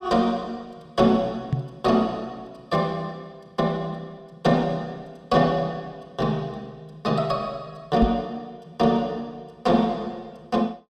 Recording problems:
knock on the microphone; at 1.5 s and at 8 s; peak +5 dB vs average level

